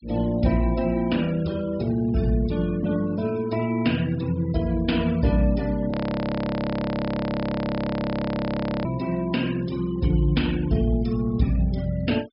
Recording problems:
treble missing; nothing above 5.5 kHz
denoising artefacts; signal-to-artefact ratio 20 dB
audio freezing; at 6 s for 3 s

